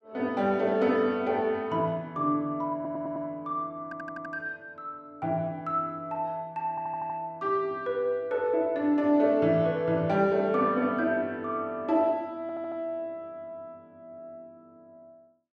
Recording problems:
stutter; 4 times, first at 3 s

